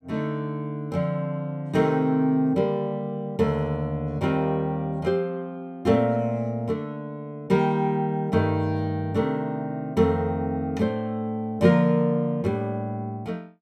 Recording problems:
none

